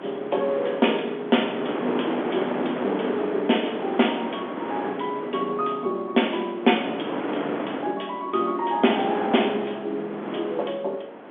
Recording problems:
phone line; 220 Hz to 3.5 kHz, G.711
wind on the microphone; below 970 Hz, SNR 6 dB

